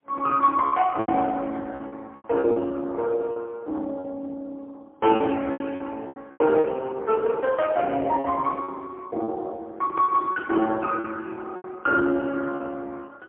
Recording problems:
phone line; 240 Hz to 2.2 kHz, AMR-NB, then MP3
packet loss; 9% of the sound replaced, filled with repeated pitch periods

